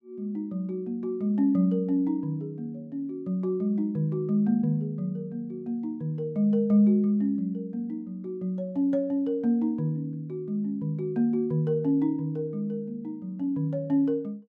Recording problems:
none

